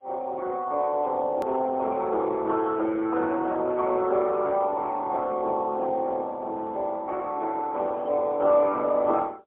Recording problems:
telephone audio; 260 Hz to 2.2 kHz, AMR-NB, then MP3
edit click; at 1.5 s

